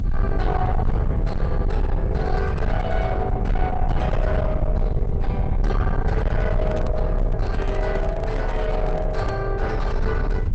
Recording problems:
lossy codec; Opus, log-spectral distance 2 dB, nothing above 8 kHz
distortion; soft clipping, signal-to-distortion ratio 8 dB
low-frequency rumble; below 90 Hz, strongest tone 34 Hz, SNR -2 dB
microphone handling noise; from 6.5 to 9.5 s; peak -2 dB vs average level

